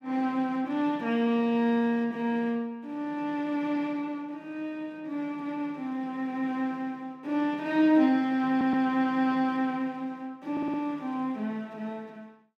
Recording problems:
stutter; at 8.5 s and at 11 s

